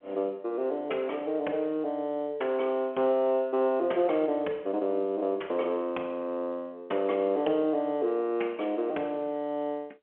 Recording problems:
telephone audio; 300 Hz to 3.5 kHz, G.711

